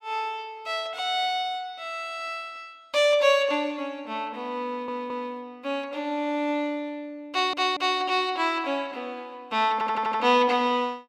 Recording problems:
audio stuttering; at 4.5 s, at 7.5 s and at 9.5 s

